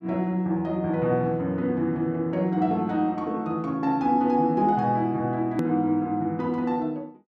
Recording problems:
click at an edit; at 5.5 s

